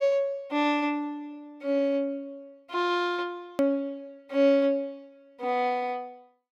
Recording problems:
click at an edit; at 3.5 s

